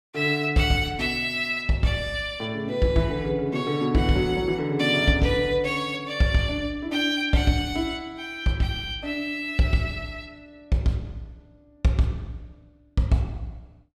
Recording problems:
none

